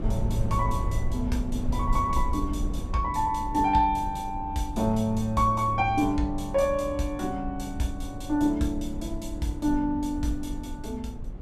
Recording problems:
wind on the microphone; below 88 Hz, SNR 8 dB

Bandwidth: 14.5 kHz